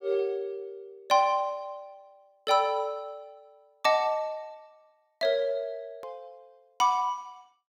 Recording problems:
click at an edit; at 6 s

